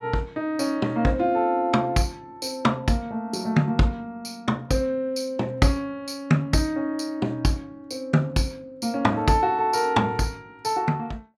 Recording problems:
none

